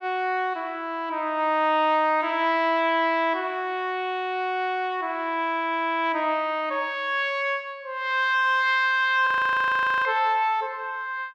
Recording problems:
frozen audio; at 9.5 s for 1 s

